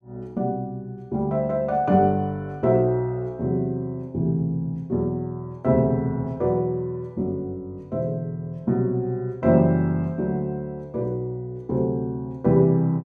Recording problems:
none

